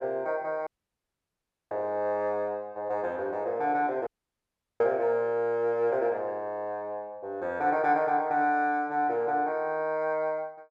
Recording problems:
dropout; at 0.5 s for 1 s and at 4 s for 0.5 s

